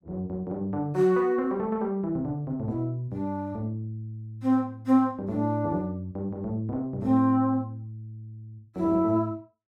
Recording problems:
none

